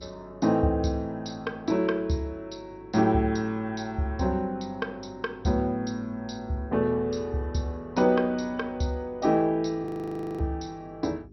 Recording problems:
codec artefacts; MP2, log-spectral distance 2 dB, nothing above 5.8 kHz
electrical hum; 50 Hz, harmonics up to 400 Hz, SNR 24 dB
audio freezing; at 10 s for 0.5 s

